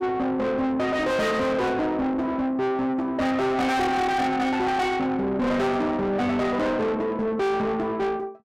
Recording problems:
distortion; soft clipping, signal-to-distortion ratio 7 dB

